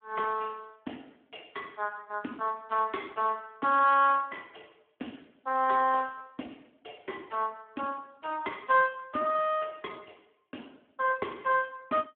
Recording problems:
telephone audio; 220 Hz to 3.3 kHz, Speex

